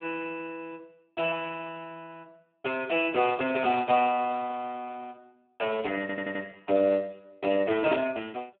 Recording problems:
telephone audio; 260 Hz to 3.3 kHz, Speex
stutter; at 6 s

